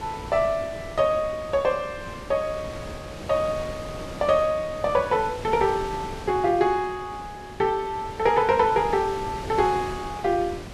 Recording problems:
wind noise; below 1.2 kHz, SNR 13 dB

